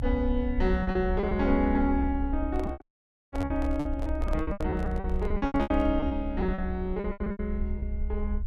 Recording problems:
low-frequency rumble; below 66 Hz, SNR 4 dB
packet loss; 16% of the sound replaced, filled with repeated pitch periods
microphone handling noise; from 2.5 to 6 s; peak -5 dB vs average level
dropout; at 3 s for 0.5 s

